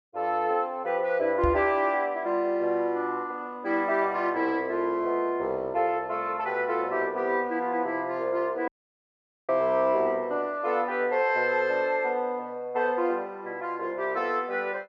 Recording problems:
microphone thump; at 1.5 s; peak 0 dB vs average level
dropout; at 8.5 s for 1 s

